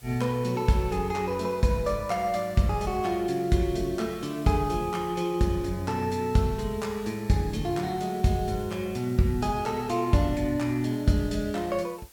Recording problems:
background hiss; slope 0 dB per octave, SNR 24 dB

